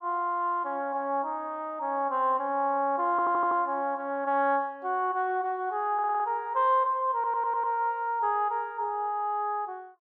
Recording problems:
audio stuttering; at 3 s, at 6 s and at 7 s

